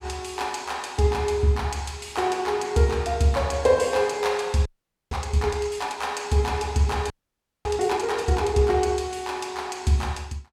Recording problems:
frozen audio; at 4.5 s and at 7 s for 0.5 s

